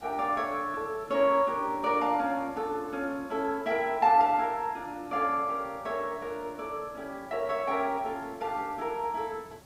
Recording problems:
background hiss; SNR 24 dB

